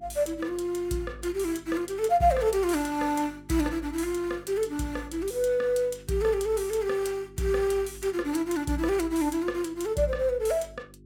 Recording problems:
hum; 50 Hz, harmonics up to 400 Hz, SNR 23 dB

